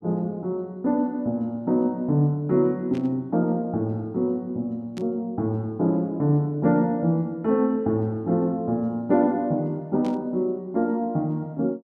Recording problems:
static burst; at 3 s, at 5 s and at 10 s; peak -14 dB vs average level

